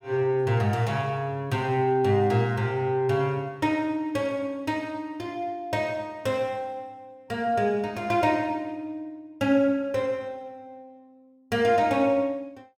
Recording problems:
none

